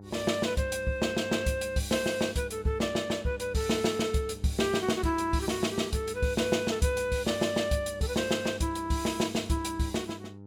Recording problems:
hum; 50 Hz, harmonics up to 900 Hz, SNR 17 dB

